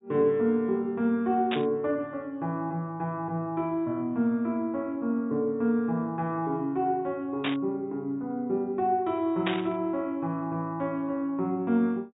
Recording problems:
treble missing; nothing above 4 kHz
burst of static; at 1.5 s, at 7.5 s and at 9.5 s; peak +2 dB vs average level

